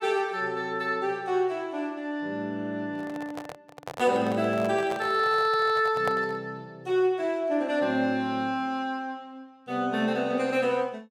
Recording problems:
handling noise; from 3 to 6.5 s; peak -1 dB vs average level

